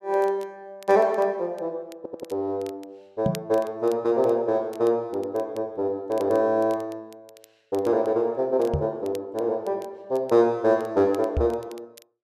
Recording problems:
crackling; vinyl, SNR 27 dB
stutter; at 2 s
knock on the microphone; at 3.5 s, at 8.5 s and at 11 s; peak +2 dB vs average level

